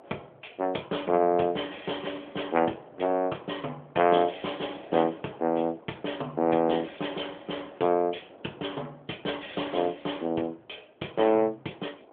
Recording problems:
telephone audio; 220 Hz to 3.5 kHz, AMR-NB
wind noise; below 770 Hz, SNR 23 dB

